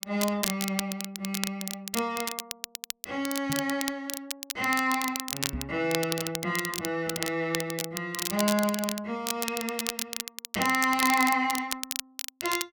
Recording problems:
crackle; vinyl, SNR 4 dB
microphone bump; at 3.5 s and at 5.5 s; peak -1 dB vs average level

